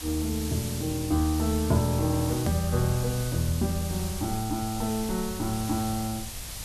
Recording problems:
hiss; slope 0 dB per octave, SNR 9 dB
rumble; below 100 Hz, SNR 15 dB
edit click; at 2.5 s

